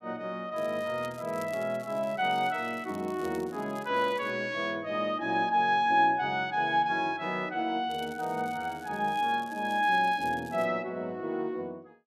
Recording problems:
crackling; from 0.5 to 4.5 s and from 8 to 11 s; loose cable, SNR 25 dB

